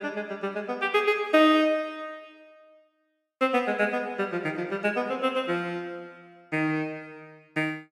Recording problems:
none

